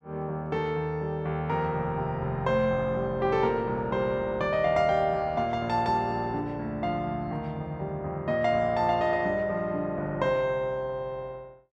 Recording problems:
none

